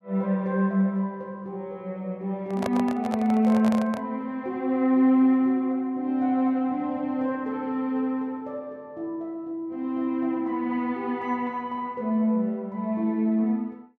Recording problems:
microphone handling noise; from 2.5 to 4 s; peak 0 dB vs average level

